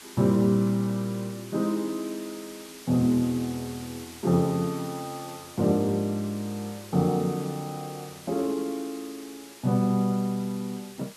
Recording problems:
background hiss; slope 0 dB per octave, SNR 17 dB

